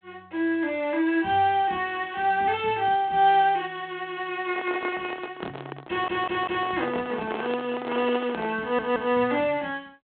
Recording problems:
phone line; 170 Hz to 3.7 kHz, G.726
microphone handling noise; from 4.5 to 9 s; peak -3 dB vs average level
audio stuttering; at 6 s and at 8.5 s

